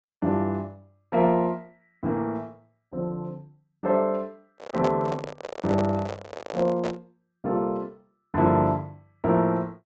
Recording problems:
low-pass filter; nothing above 8 kHz
lossy codec; Opus, log-spectral distance 2 dB
handling noise; from 4.5 to 7 s; peak 0 dB vs average level

